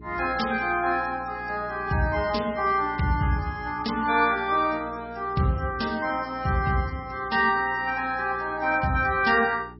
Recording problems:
codec artefacts; MP3, log-spectral distance 4 dB, nothing above 5.5 kHz
hum; 60 Hz, harmonics up to 420 Hz, SNR 20 dB

